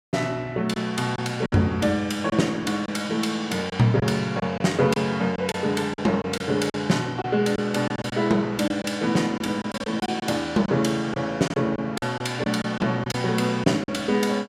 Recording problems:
packet loss; 7% of the sound replaced, filled with silence

